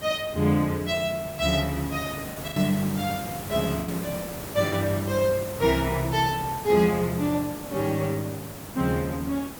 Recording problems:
background hiss; slope -5 dB per octave, SNR 11 dB
packet loss; 3% of the sound replaced, filled with the last packet

